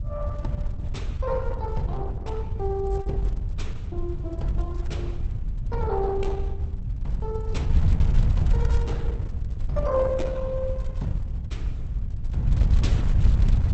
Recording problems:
lossy compression; Opus, log-spectral distance 2 dB, nothing above 8 kHz
wind noise; below 90 Hz, SNR -3 dB

